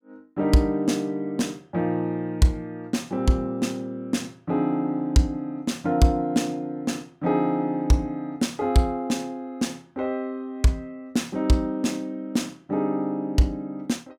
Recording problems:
none

